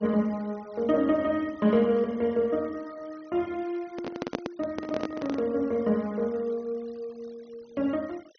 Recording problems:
low-pass filter; nothing above 6.2 kHz
noise reduction artefacts; signal-to-artefact ratio 26 dB
microphone handling noise; from 4 to 5.5 s; peak +2 dB vs average level

